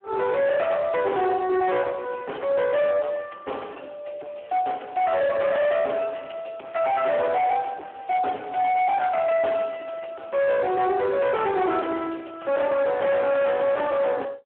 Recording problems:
telephone audio; 300 Hz to 3.2 kHz, Speex
distorted audio; hard clipping, signal-to-distortion ratio 7 dB

